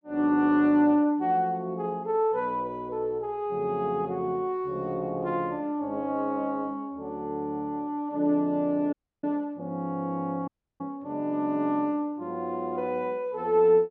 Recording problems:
dropout; at 9 s and at 10 s

